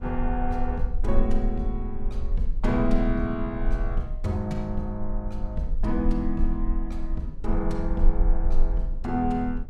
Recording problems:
low-frequency rumble; below 36 Hz, strongest tone 22 Hz, SNR 1 dB
wind on the microphone; below 220 Hz, SNR 18 dB

